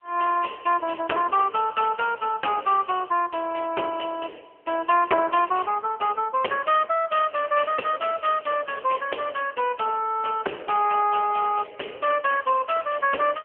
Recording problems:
telephone audio; 300 Hz to 3.3 kHz, AMR-NB

